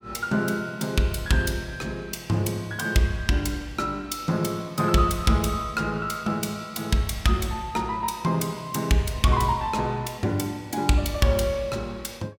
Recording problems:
none

